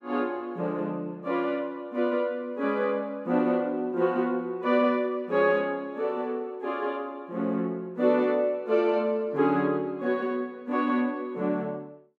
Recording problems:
none

